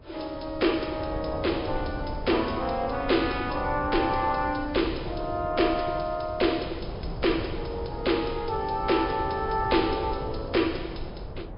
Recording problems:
treble cut off; nothing above 5.2 kHz
lossy codec; Vorbis, log-spectral distance 4 dB
wind noise; below 390 Hz, SNR 10 dB

